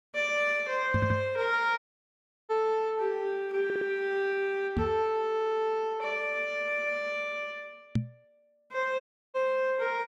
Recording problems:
knock on the microphone; at 1 s, at 5 s and at 8 s; peak +5 dB vs average level
audio stuttering; at 1 s, at 3.5 s and at 5.5 s
dropout; at 2 s for 0.5 s and at 9 s

